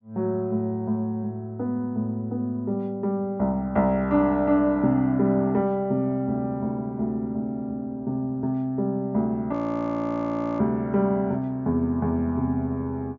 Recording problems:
treble cut off; nothing above 7.1 kHz
frozen audio; at 9.5 s for 1 s

